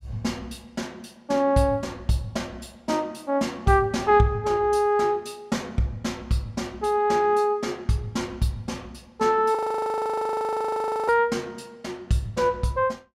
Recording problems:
frozen audio; at 9.5 s for 1.5 s

